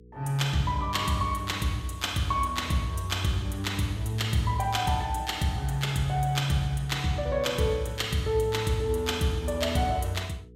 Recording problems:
hum; 60 Hz, harmonics up to 480 Hz, SNR 23 dB

